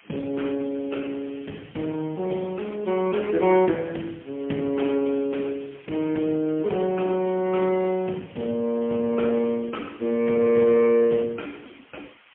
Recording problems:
phone line; 150 Hz to 3.3 kHz, AMR-NB, then MP3
background hiss; SNR 27 dB

